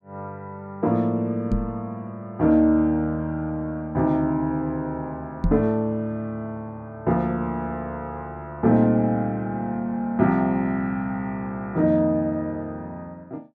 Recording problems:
knock on the microphone; at 1.5 s and at 5.5 s; peak +5 dB vs average level

